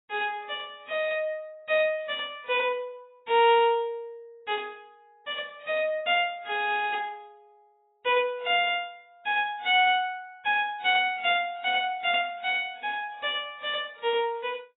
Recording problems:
codec artefacts; AAC, log-spectral distance 3 dB, nothing above 3.5 kHz

